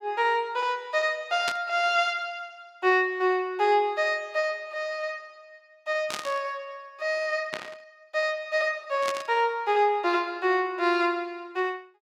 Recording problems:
burst of static; 4 times, first at 1.5 s; peak 0 dB vs average level

